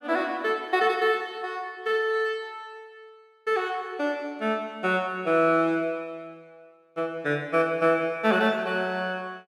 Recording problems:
none

